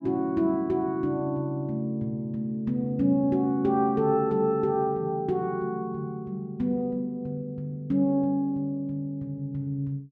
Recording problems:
none

